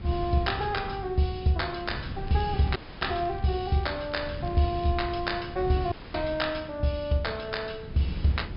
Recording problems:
treble cut off; nothing above 5.5 kHz
electrical hum; 60 Hz, harmonics up to 480 Hz, SNR 23 dB
wind on the microphone; below 180 Hz, SNR 10 dB
crackling; from 2.5 to 5 s; loose cable, SNR 25 dB
audio cutting out; at 3 s and at 6 s

